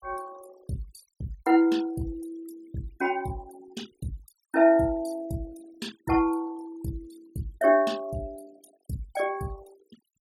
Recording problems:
denoising artefacts; signal-to-artefact ratio 21 dB

